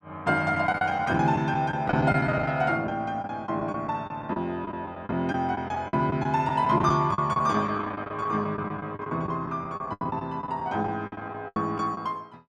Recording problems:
packet loss; 14% of the sound replaced, filled with the last packet

